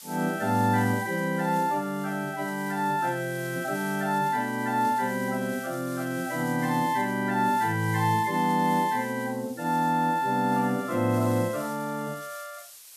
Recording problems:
hiss; slope +4 dB per octave, SNR 18 dB

